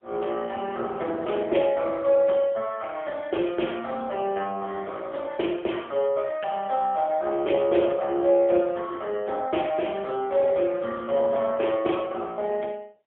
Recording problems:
phone line; 260 Hz to 3.5 kHz, AMR-NB, then MP3

